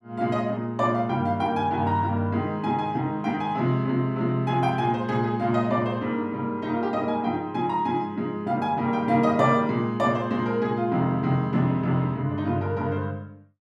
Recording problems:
none

